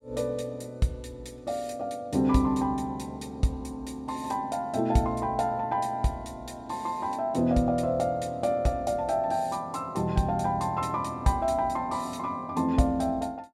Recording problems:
none

